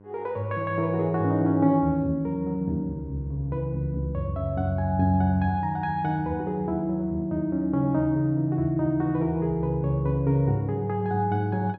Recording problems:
hum; 50 Hz, harmonics up to 1.1 kHz, SNR 26 dB

